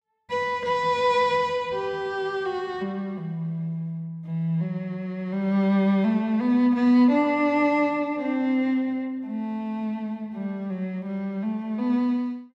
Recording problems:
none

